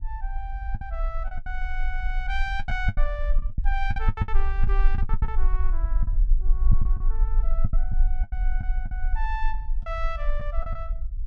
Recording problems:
rumble; below 40 Hz, strongest tone 20 Hz, SNR -7 dB
lost packets; 12% of the sound replaced, filled with the last packet

